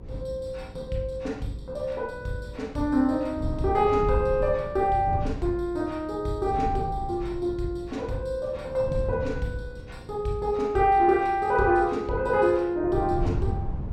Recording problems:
electrical hum; 60 Hz, harmonics up to 540 Hz, SNR 22 dB
wind noise; below 130 Hz, SNR 10 dB

